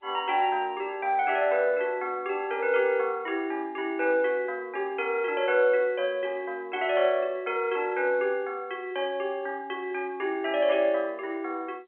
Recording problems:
phone line; 300 Hz to 3.4 kHz, G.711

